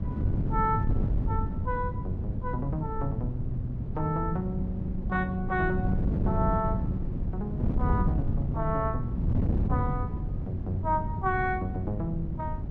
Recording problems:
wind on the microphone; below 170 Hz, SNR -1 dB

